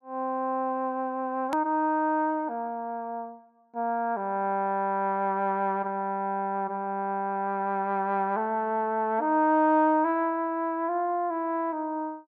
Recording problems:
hard cut with a click; at 1.5 s

